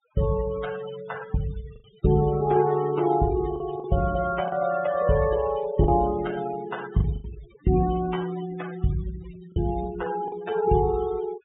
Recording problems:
low-pass filter; nothing above 4 kHz
noise reduction artefacts; signal-to-artefact ratio 14 dB
packet loss; 4% of the sound replaced, filled with the last packet

